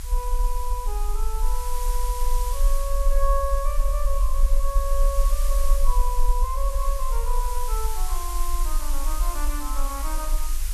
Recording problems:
background hiss; slope +2 dB per octave, SNR 5 dB
low-frequency rumble; below 40 Hz, strongest tone 20 Hz, SNR -5 dB

